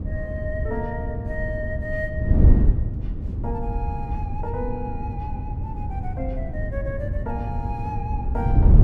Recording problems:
electrical hum; 50 Hz, harmonics up to 700 Hz, SNR 18 dB
wind noise; below 110 Hz, SNR -7 dB

